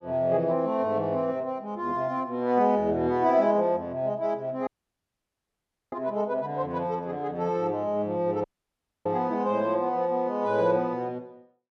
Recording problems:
dropout; at 4.5 s for 1.5 s and at 8.5 s for 0.5 s

